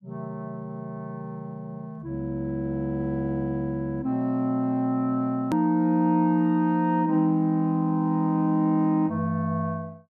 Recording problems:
hard cut with a click; at 5.5 s

